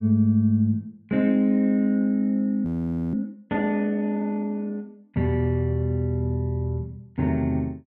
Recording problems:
frozen audio; at 2.5 s

